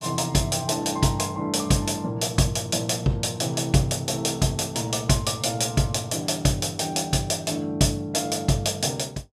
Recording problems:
none

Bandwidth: 14.5 kHz